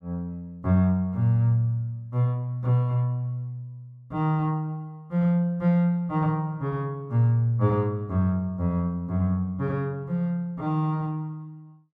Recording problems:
none

